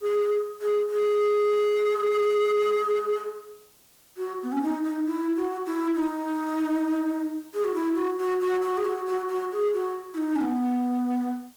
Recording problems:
distorted audio; hard clipping, signal-to-distortion ratio 10 dB
hiss; SNR 29 dB

